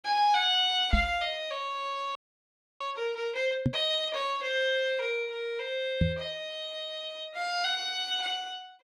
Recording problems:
microphone thump; at 1 s, at 3.5 s and at 6 s; peak +7 dB vs average level
audio freezing; at 2 s for 0.5 s

